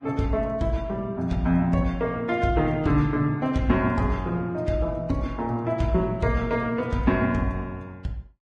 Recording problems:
codec artefacts; Vorbis, log-spectral distance 2 dB, nothing above 10.1 kHz

